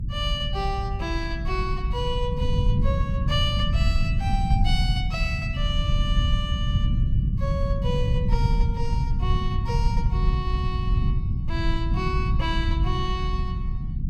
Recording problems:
low-frequency rumble; below 120 Hz, SNR -5 dB

